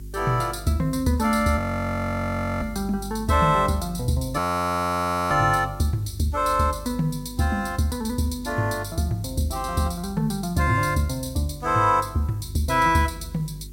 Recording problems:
hum; 50 Hz, harmonics up to 400 Hz, SNR 16 dB
background hiss; slope +2 dB per octave, SNR 30 dB
frozen audio; at 1.5 s for 1 s and at 4.5 s for 1 s

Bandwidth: 16 kHz